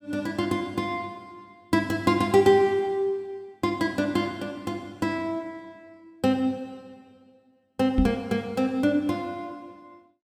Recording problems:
microphone bump; at 8 s; peak +5 dB vs average level

